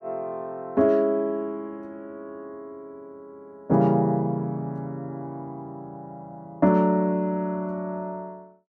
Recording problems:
none

